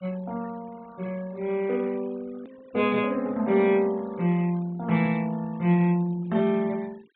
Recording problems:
low-pass filter; nothing above 4 kHz
noise reduction artefacts; signal-to-artefact ratio 26 dB
click at an edit; at 2.5 s

